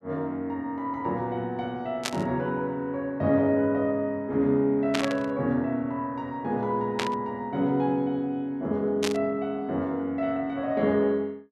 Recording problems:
static burst; 4 times, first at 2 s; peak +3 dB vs average level

